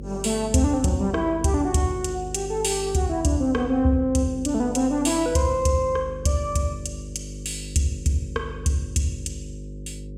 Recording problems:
hum; 50 Hz, harmonics up to 550 Hz, SNR 13 dB

